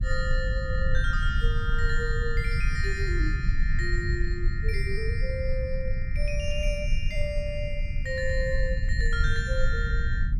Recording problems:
rumble; below 68 Hz, SNR -3 dB

